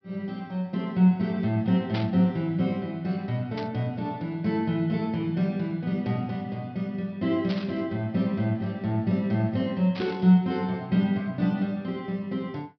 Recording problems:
low-pass filter; nothing above 5.5 kHz
burst of static; 4 times, first at 2 s; peak -6 dB vs average level

